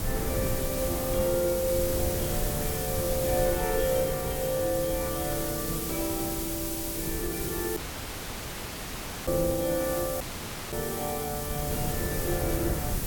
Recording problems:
hiss; slope +2 dB per octave, SNR 3 dB
wind on the microphone; below 270 Hz, SNR 5 dB
dropout; at 8 s for 1.5 s and at 10 s for 0.5 s

